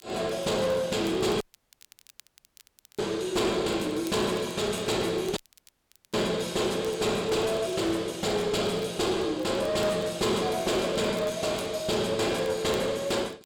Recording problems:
distortion; hard clipping, uneven, signal-to-distortion ratio 10 dB
crackling; vinyl, SNR 25 dB
dropout; at 1.5 s for 1.5 s and at 5.5 s for 1 s

